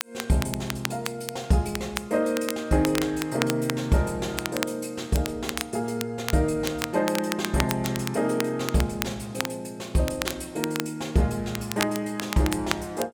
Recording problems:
crackle; vinyl, SNR 7 dB

